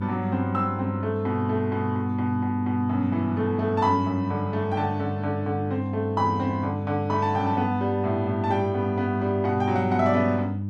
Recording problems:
electrical hum; 50 Hz, harmonics up to 400 Hz, SNR 5 dB

